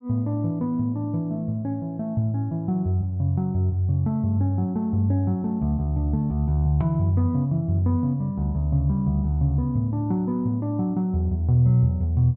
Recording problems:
treble missing; nothing above 8 kHz

